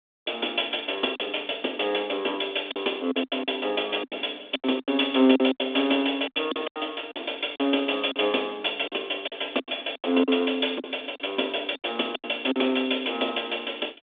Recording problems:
phone line; 220 Hz to 3.6 kHz, G.726
lost packets; 11% of the sound replaced, filled with silence

